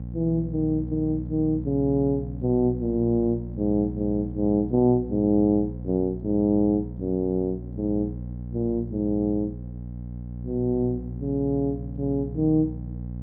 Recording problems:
hum; 60 Hz, harmonics up to 540 Hz, SNR 10 dB

